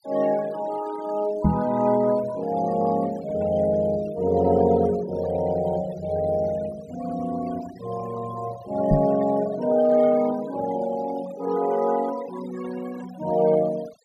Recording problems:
denoising artefacts; signal-to-artefact ratio 17 dB
microphone thump; at 1.5 s and at 9 s; peak +7 dB vs average level

